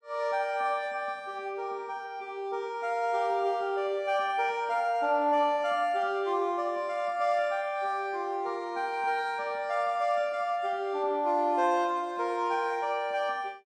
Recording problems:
none

